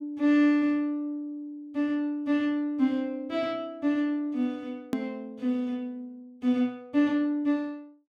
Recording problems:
hard cut with a click; at 5 s

